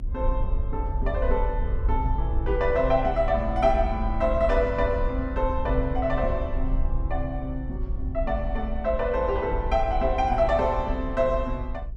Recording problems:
rumble; below 56 Hz, SNR 4 dB

